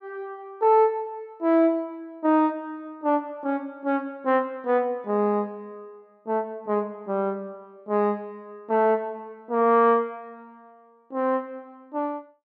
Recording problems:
none

